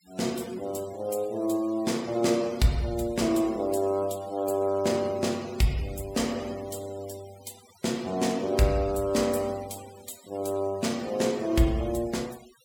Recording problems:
noise reduction artefacts; signal-to-artefact ratio 20 dB

